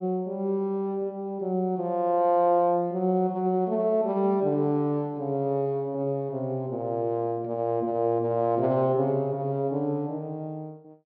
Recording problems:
treble cut off; nothing above 5.3 kHz

